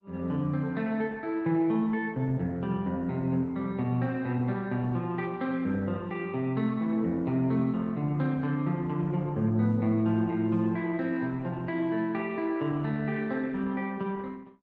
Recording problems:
codec artefacts; Opus, log-spectral distance 2 dB

